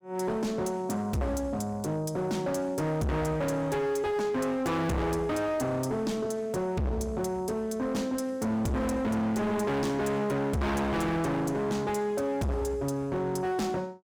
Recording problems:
distorted audio; hard clipping, signal-to-distortion ratio 6 dB

